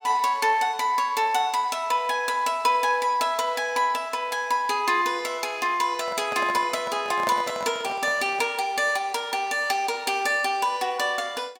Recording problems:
microphone handling noise; from 6 to 8.5 s; peak -2 dB vs average level

